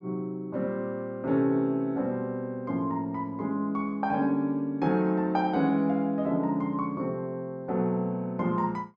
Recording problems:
none

